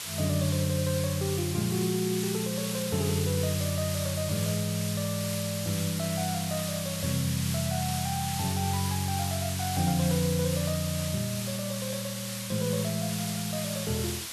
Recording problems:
background hiss; slope +2 dB per octave, SNR 4 dB

